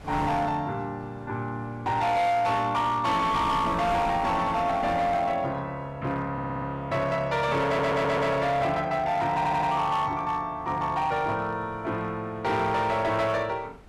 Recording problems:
distortion; hard clipping, signal-to-distortion ratio 11 dB
wind noise; below 810 Hz, SNR 18 dB
stutter; at 6.5 s, at 7.5 s and at 9.5 s

